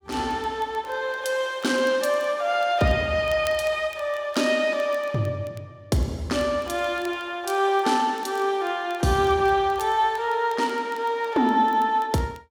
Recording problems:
crackle; vinyl, SNR 27 dB

